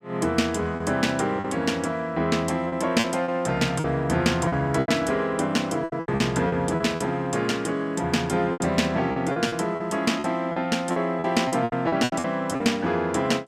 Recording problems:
packet loss; 10% of the sound replaced, filled with repeated pitch periods

